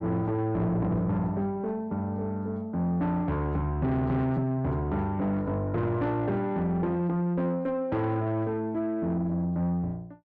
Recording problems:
distorted audio; soft clipping, signal-to-distortion ratio 11 dB

